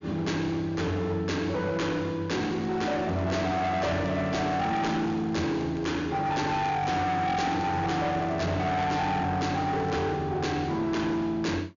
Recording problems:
treble cut off; nothing above 7 kHz
distortion; hard clipping, signal-to-distortion ratio 8 dB
crackling; from 2.5 to 6 s, from 6.5 to 9 s and at 10 s; loose cable, SNR 27 dB

